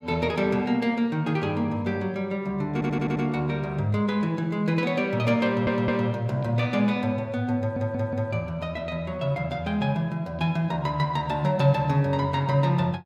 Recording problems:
audio stuttering; at 2.5 s, at 5.5 s and at 7.5 s

